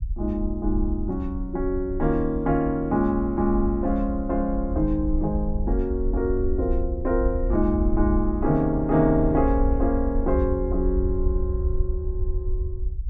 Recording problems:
low-frequency rumble; below 66 Hz, SNR 5 dB

